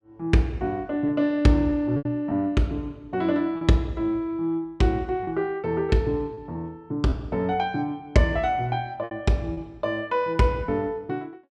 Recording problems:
packet loss; 4% of the sound replaced, filled with repeated pitch periods

